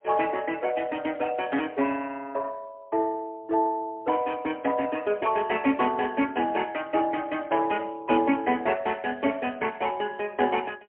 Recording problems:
phone line; 220 Hz to 3.1 kHz, AMR-NB, then MP3
burst of static; at 1.5 s and at 5 s; peak -19 dB vs average level

